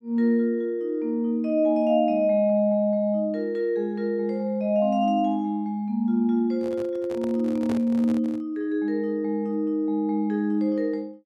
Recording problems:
handling noise; from 6.5 to 8.5 s; peak -6 dB vs average level

